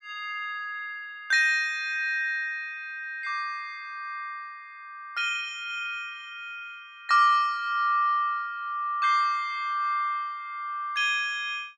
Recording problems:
none

